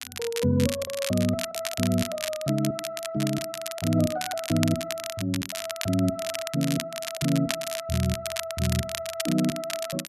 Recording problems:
crackling; vinyl, SNR 6 dB

